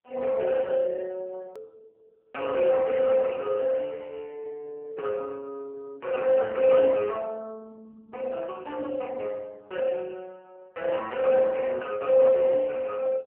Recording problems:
phone line; 240 Hz to 3.6 kHz, AMR-NB
click at an edit; at 1.5 s

